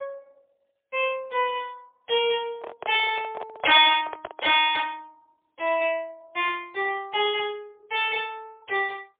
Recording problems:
phone line; 320 Hz to 3.6 kHz, AMR-NB, then MP3
microphone handling noise; from 2.5 to 4.5 s; peak -2 dB vs average level

